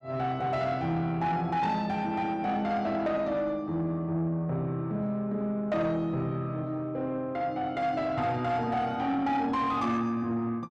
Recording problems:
distortion; soft clipping, signal-to-distortion ratio 12 dB

